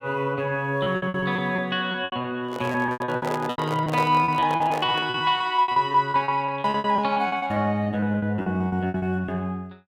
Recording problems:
packet loss; 19% of the sound replaced, filled with repeated pitch periods
microphone handling noise; from 2.5 to 5 s; peak -2 dB vs average level

